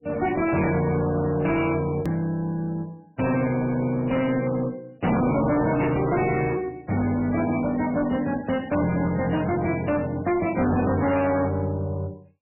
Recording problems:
lossy codec; MP3, log-spectral distance 4 dB
distorted audio; soft clipping, signal-to-distortion ratio 6 dB
click at an edit; at 2 s

